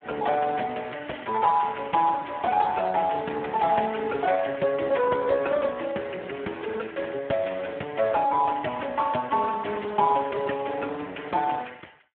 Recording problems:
telephone audio; 240 Hz to 2 kHz, Speex

